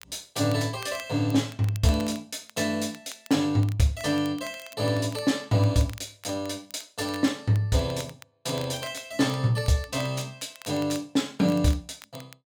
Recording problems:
crackling; vinyl, SNR 21 dB

